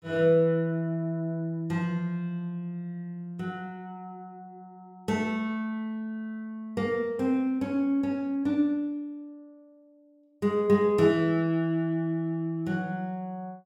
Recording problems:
none

